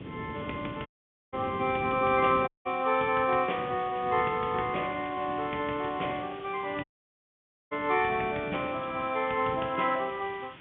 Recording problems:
telephone audio; 220 Hz to 3.5 kHz, G.711
background hiss; SNR 21 dB
wind noise; below 370 Hz, SNR 15 dB
dropout; at 1 s, at 2.5 s and at 7 s for 1 s
crackle; from 2.5 to 5.5 s and from 8 to 10 s; loose cable, SNR 28 dB

